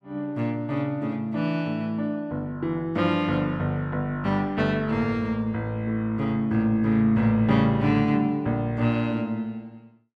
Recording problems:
none

